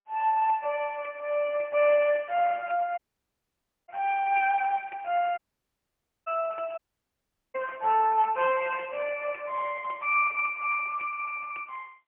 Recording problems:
telephone audio; 390 Hz to 3.1 kHz, AMR-NB, then MP3
audio cutting out; at 3 s for 1 s, at 5.5 s for 1 s and at 7 s for 1 s

